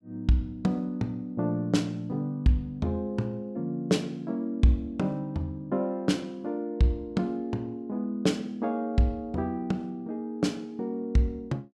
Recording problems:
none

